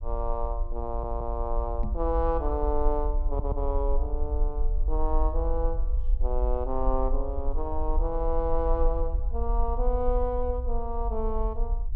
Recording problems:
rumble; below 48 Hz, SNR 0 dB
audio stuttering; at 1 s and at 3.5 s
microphone bump; at 2 s; peak -2 dB vs average level

